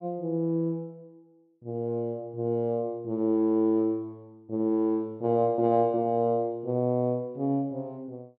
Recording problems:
none

